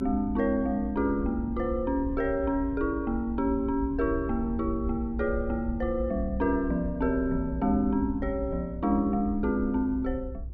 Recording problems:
rumble; below 70 Hz, SNR 9 dB

